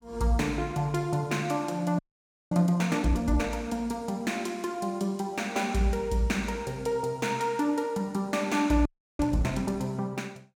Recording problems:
frozen audio; at 2 s for 0.5 s and at 9 s

